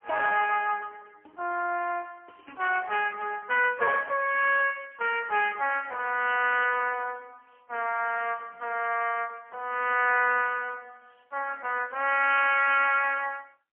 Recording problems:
telephone audio; 370 Hz to 3.2 kHz, AMR-NB, then MP3

